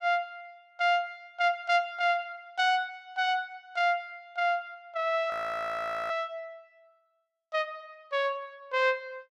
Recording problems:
frozen audio; at 5.5 s for 1 s

